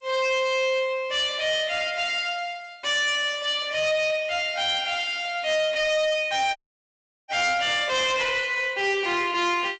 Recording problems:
lossy codec; G.722, log-spectral distance 3 dB, nothing above 7.8 kHz
distortion; soft clipping, signal-to-distortion ratio 11 dB
dropout; at 6.5 s for 0.5 s

